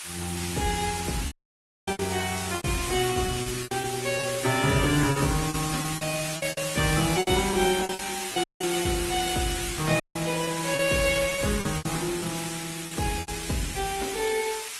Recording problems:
lossy codec; AAC, then Opus, log-spectral distance 14 dB
background hiss; SNR 5 dB
lost packets; 11% of the sound replaced, filled with repeated pitch periods
audio cutting out; at 1.5 s for 0.5 s, at 8.5 s and at 10 s

